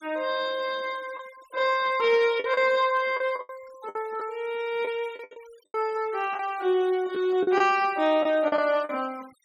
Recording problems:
noise reduction artefacts; signal-to-artefact ratio 25 dB
lost packets; 8% of the sound replaced, filled with the last packet

